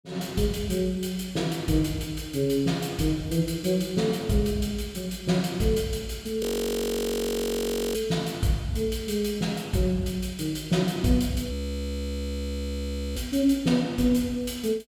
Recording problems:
frozen audio; at 6.5 s for 1.5 s and at 12 s for 1.5 s

